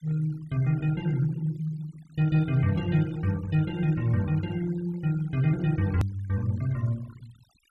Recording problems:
noise reduction artefacts; signal-to-artefact ratio 23 dB
edit click; at 6 s

